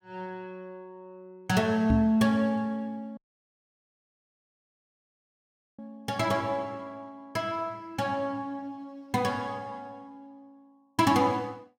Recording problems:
microphone thump; at 2 s; peak +5 dB vs average level
audio cutting out; at 3 s for 2.5 s

